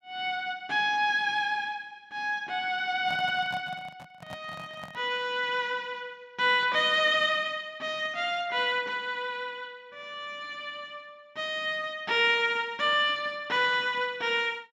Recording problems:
microphone handling noise; from 3 to 5 s; peak -10 dB vs average level

